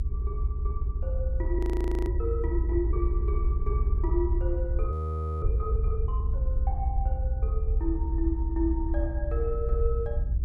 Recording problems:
electrical hum; 60 Hz, harmonics up to 420 Hz, SNR 8 dB
rumble; below 72 Hz, SNR -5 dB
audio freezing; at 1.5 s and at 5 s for 0.5 s

